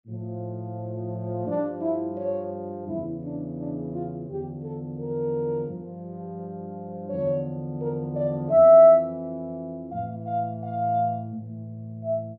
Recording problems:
none

